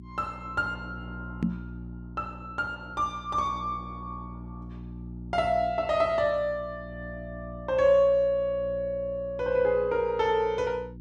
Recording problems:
electrical hum; 60 Hz, harmonics up to 360 Hz, SNR 15 dB
microphone thump; at 1.5 s; peak +4 dB vs average level

